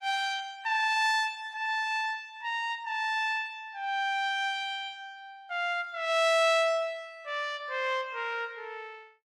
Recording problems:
lossy codec; Opus, log-spectral distance 2 dB, nothing above 16 kHz

